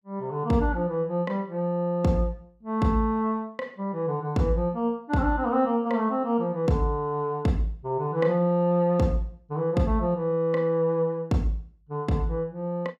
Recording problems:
none

